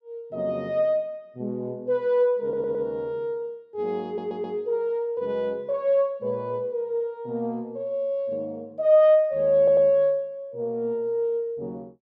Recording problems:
stutter; at 2.5 s, at 4 s and at 9.5 s

